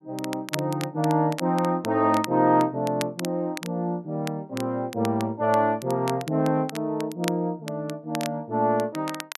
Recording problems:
crackling; vinyl, SNR 14 dB

